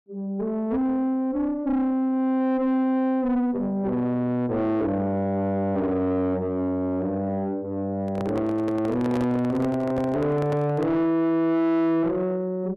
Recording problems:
distorted audio; soft clipping, signal-to-distortion ratio 9 dB
microphone handling noise; from 8 to 11 s; peak -1 dB vs average level

